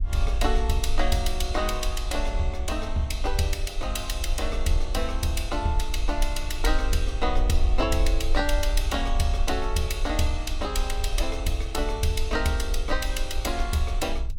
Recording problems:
low-frequency rumble; below 46 Hz, strongest tone 20 Hz, SNR 2 dB

